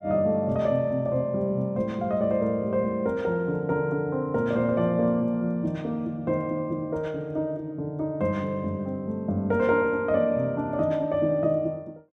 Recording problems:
none

